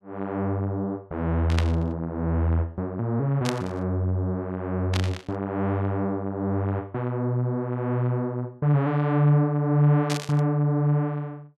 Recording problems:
static burst; 4 times, first at 1.5 s; peak 0 dB vs average level

